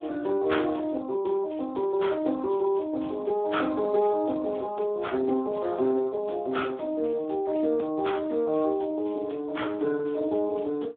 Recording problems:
phone line; 240 Hz to 3.6 kHz, Speex

